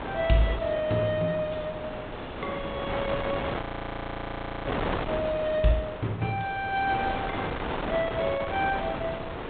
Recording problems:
low-pass filter; nothing above 4 kHz
wind on the microphone; below 1.3 kHz, SNR 5 dB
audio freezing; at 3.5 s for 1 s

